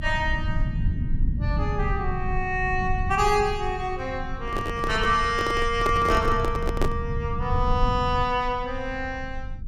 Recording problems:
rumble; below 110 Hz, SNR 5 dB
handling noise; from 4.5 to 7 s; peak +3 dB vs average level

